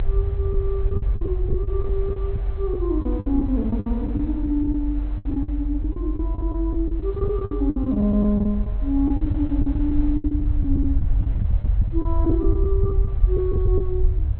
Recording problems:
treble cut off; nothing above 4.1 kHz
low-frequency rumble; below 74 Hz, SNR -1 dB
wind on the microphone; below 790 Hz, SNR 20 dB
lost packets; 14% of the sound replaced, filled with the last packet

